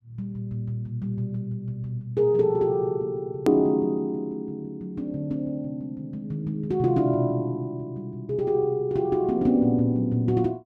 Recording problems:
click at an edit; at 3.5 s

